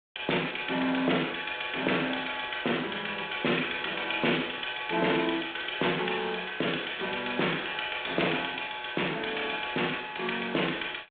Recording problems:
telephone audio; 280 Hz to 3.7 kHz, G.726
distortion; soft clipping, signal-to-distortion ratio 14 dB
crackling; from 2 to 3 s and from 5 to 7 s; loose cable, SNR 20 dB

